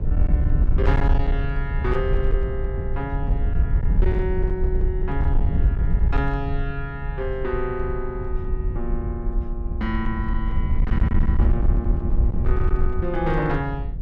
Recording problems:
distortion; hard clipping, uneven, signal-to-distortion ratio 13 dB
wind on the microphone; below 72 Hz, SNR -4 dB

